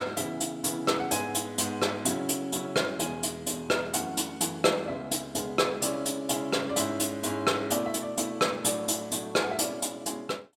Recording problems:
none

